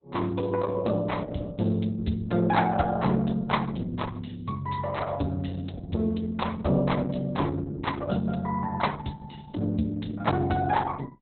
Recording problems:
codec artefacts; Opus, log-spectral distance 4 dB, nothing above 4 kHz

